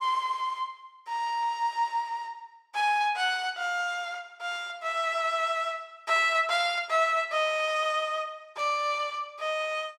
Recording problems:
burst of static; at 8.5 s; peak -16 dB vs average level

